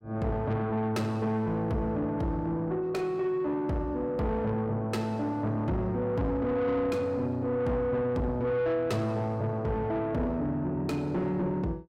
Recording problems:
distortion; soft clipping, signal-to-distortion ratio 10 dB

